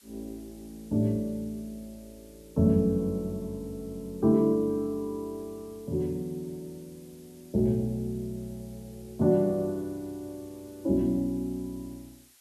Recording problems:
background hiss; slope +3 dB per octave, SNR 27 dB

